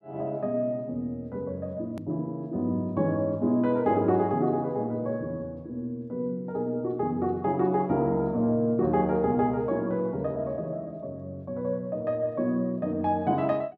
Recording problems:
edit click; at 2 s

